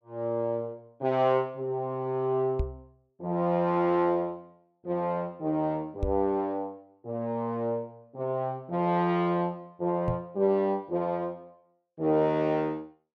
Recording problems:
microphone bump; at 2.5 s, at 6 s and at 10 s; peak +2 dB vs average level

